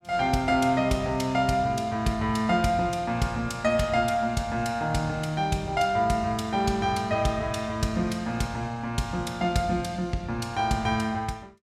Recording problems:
none

